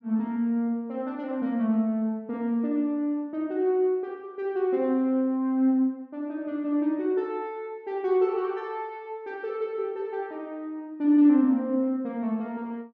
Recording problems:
none

